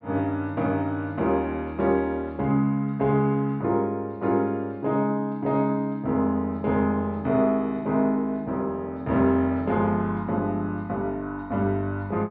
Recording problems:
treble missing; nothing above 5.5 kHz

